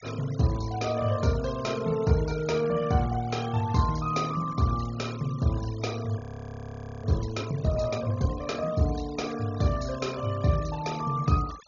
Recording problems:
treble cut off; nothing above 7 kHz
denoising artefacts; signal-to-artefact ratio 17 dB
frozen audio; at 6 s for 1 s

